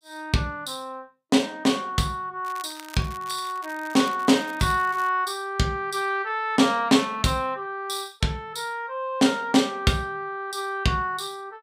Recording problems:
crackle; from 2.5 to 5 s; loose cable, SNR 20 dB

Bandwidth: 15.5 kHz